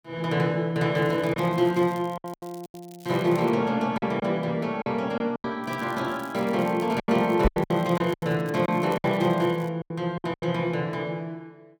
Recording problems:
lost packets; 9% of the sound replaced, filled with silence
crackle; from 1 to 3.5 s and from 5.5 to 9.5 s; loose cable, SNR 25 dB
microphone thump; at 7.5 s; peak +5 dB vs average level

